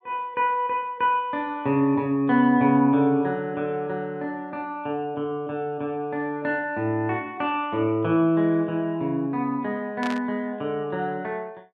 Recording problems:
static burst; at 10 s; peak -5 dB vs average level

